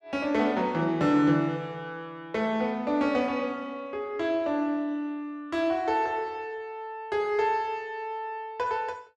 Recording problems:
none

